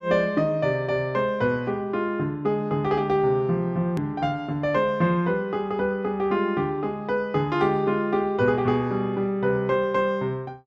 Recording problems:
edit click; at 4 s

